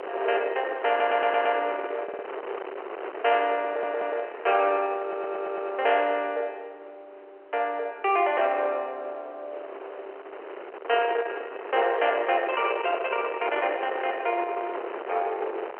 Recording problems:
telephone audio; 340 Hz to 3.1 kHz, G.711
distortion; soft clipping, signal-to-distortion ratio 16 dB
wind noise; below 1.2 kHz, SNR 10 dB
audio stuttering; 4 times, first at 1 s

